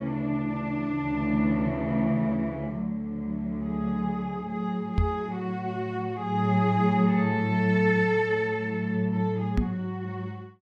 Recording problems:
knock on the microphone; at 5 s and at 9.5 s; peak +5 dB vs average level

